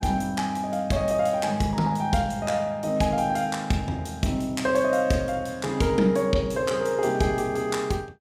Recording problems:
none

